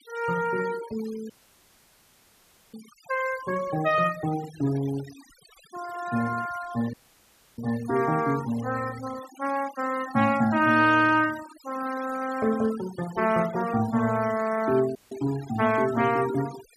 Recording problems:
denoising artefacts; signal-to-artefact ratio 16 dB
audio cutting out; at 1.5 s for 1.5 s, at 7 s for 0.5 s and at 15 s

